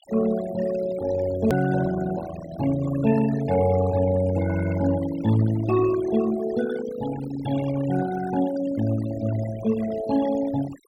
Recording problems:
noise reduction artefacts; signal-to-artefact ratio 13 dB
click at an edit; at 1.5 s

